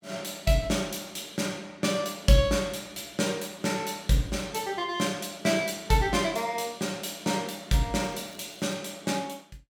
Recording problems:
crackling; at 8 s; loose cable, SNR 28 dB

